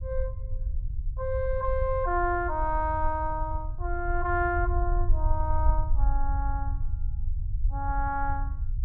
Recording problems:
low-frequency rumble; below 64 Hz, SNR 1 dB

